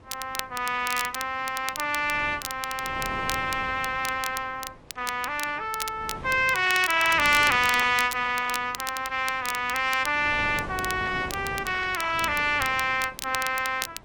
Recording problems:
codec artefacts; AAC, log-spectral distance 3 dB
wind noise; below 860 Hz, SNR 18 dB
crackle; vinyl, SNR 11 dB

